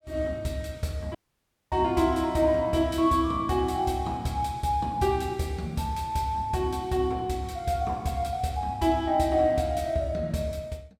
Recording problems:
audio cutting out; at 1 s for 0.5 s

